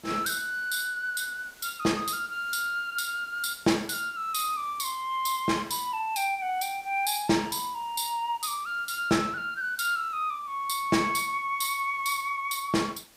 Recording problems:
hiss; slope -2 dB per octave, SNR 24 dB

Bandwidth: 15.5 kHz